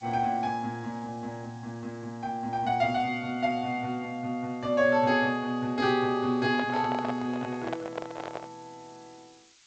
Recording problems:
lossy compression; G.722, log-spectral distance 5 dB, nothing above 8 kHz
hiss; SNR 29 dB
handling noise; from 6.5 to 8.5 s; peak -1 dB vs average level

